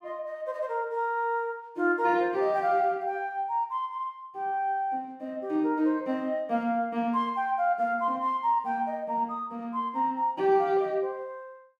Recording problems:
none

